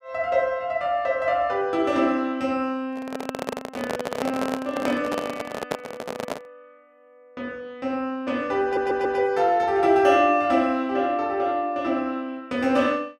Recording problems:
handling noise; from 3 to 6.5 s; peak 0 dB vs average level
stutter; at 8.5 s

